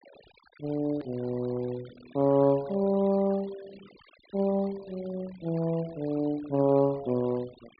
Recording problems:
treble cut off; nothing above 4.9 kHz
noise reduction artefacts; signal-to-artefact ratio 23 dB
edit click; at 1 s

